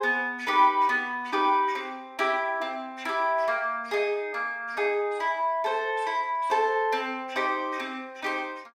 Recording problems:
none

